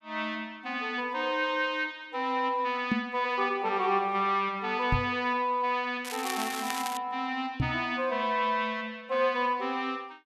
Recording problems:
microphone bump; at 3 s, at 5 s and at 7.5 s; peak +5 dB vs average level
crackle; at 6 s; loose cable, SNR 8 dB

